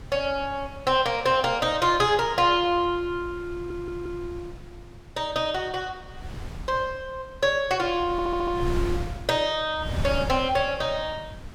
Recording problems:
wind noise; below 170 Hz, SNR 13 dB
audio stuttering; at 3.5 s and at 8 s

